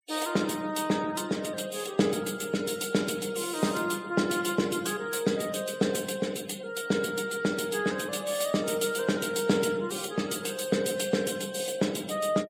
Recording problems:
denoising artefacts; signal-to-artefact ratio 19 dB

